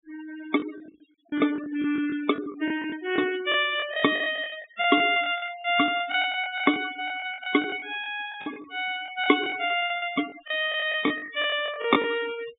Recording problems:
treble cut off; nothing above 4 kHz
denoising artefacts; signal-to-artefact ratio 14 dB
lost packets; 15% of the sound replaced, filled with the last packet

